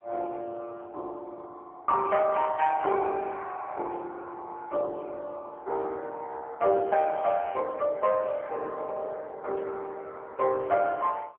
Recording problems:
phone line; 320 Hz to 2.3 kHz, AMR-NB

